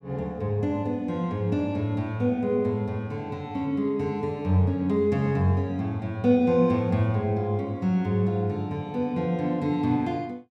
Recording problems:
none

